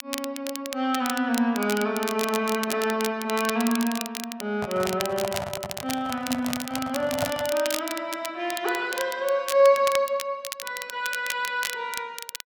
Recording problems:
crackle; vinyl, SNR 8 dB
microphone handling noise; from 4.5 to 7.5 s; peak 0 dB vs average level

